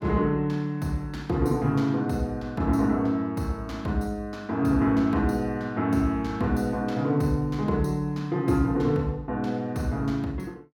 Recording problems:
none

